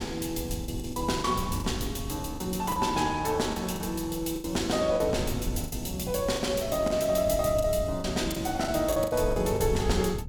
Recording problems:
wind on the microphone; below 120 Hz, SNR 10 dB
lost packets; 10% of the sound replaced, filled with the last packet

